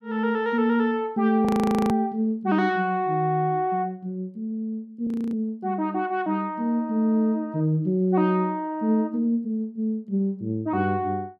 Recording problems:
audio freezing; at 1.5 s and at 5 s

